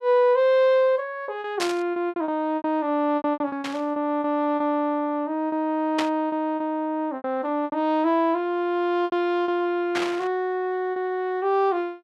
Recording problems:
lost packets; 9% of the sound replaced, filled with repeated pitch periods
static burst; 4 times, first at 1.5 s; peak +1 dB vs average level

